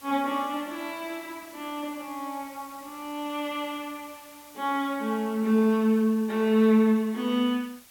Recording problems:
hiss; slope 0 dB per octave, SNR 22 dB

